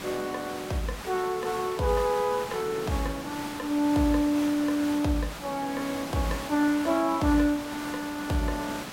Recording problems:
hiss; slope -3 dB per octave, SNR 10 dB

